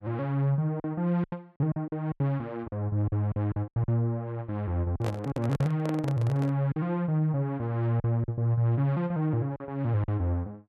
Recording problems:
lost packets; 9% of the sound replaced, filled with silence
handling noise; from 5 to 6.5 s; peak -2 dB vs average level

